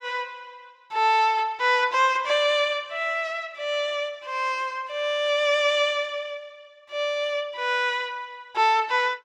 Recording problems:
none

